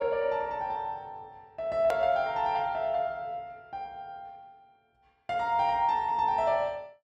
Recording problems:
click at an edit; at 2 s

